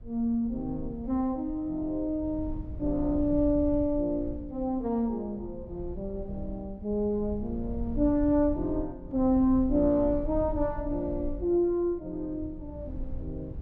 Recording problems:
rumble; below 80 Hz, SNR 12 dB

